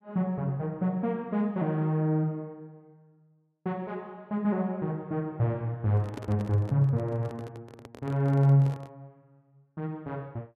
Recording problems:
microphone handling noise; from 6 to 9 s; peak -6 dB vs average level

